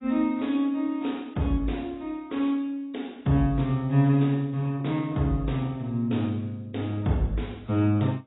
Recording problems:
lossy codec; AAC, log-spectral distance 2 dB, nothing above 3.8 kHz

